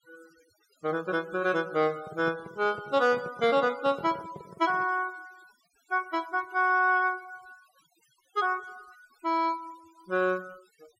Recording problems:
noise reduction artefacts; signal-to-artefact ratio 25 dB
microphone handling noise; from 2 to 5 s; peak -10 dB vs average level

